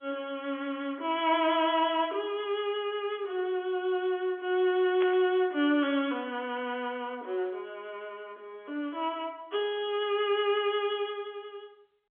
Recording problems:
phone line; 260 Hz to 3.5 kHz, G.711
burst of static; at 5 s; peak -5 dB vs average level

